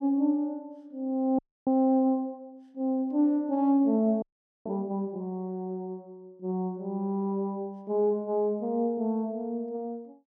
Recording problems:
audio freezing; at 1.5 s and at 4 s

